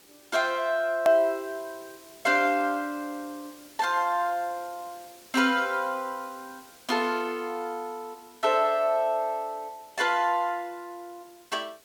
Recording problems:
hiss; SNR 24 dB
hard cut with a click; at 1 s

